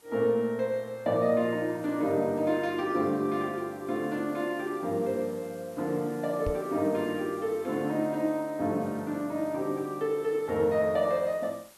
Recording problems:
background hiss; slope -1 dB per octave, SNR 25 dB
knock on the microphone; at 6.5 s; peak -1 dB vs average level

